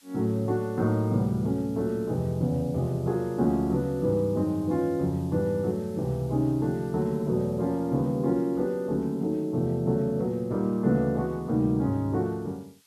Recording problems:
hiss; slope +3 dB per octave, SNR 29 dB

